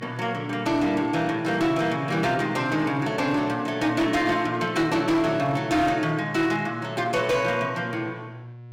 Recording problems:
distortion; hard clipping, uneven, signal-to-distortion ratio 11 dB
electrical hum; 60 Hz, harmonics up to 720 Hz, SNR 17 dB

